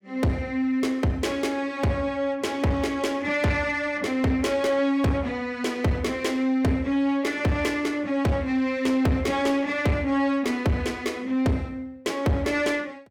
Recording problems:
distortion; soft clipping, signal-to-distortion ratio 10 dB

